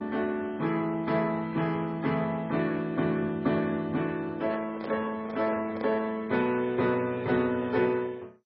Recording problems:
lossy compression; MP3, then MP2, log-spectral distance 3 dB, nothing above 5.2 kHz
handling noise; from 4.5 to 6 s; peak -6 dB vs average level

